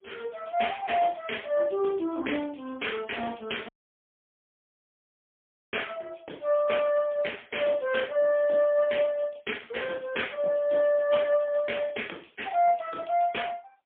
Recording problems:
phone line; 260 Hz to 3.3 kHz, AMR-NB, then MP3
dropout; at 3.5 s for 2 s

